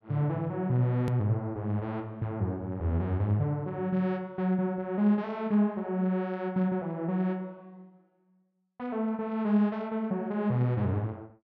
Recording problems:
click at an edit; at 1 s

